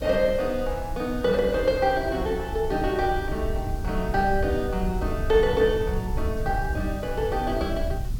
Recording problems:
hiss; slope -1 dB per octave, SNR 23 dB
wind noise; below 88 Hz, SNR 7 dB

